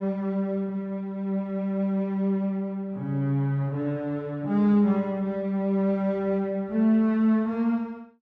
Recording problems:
none

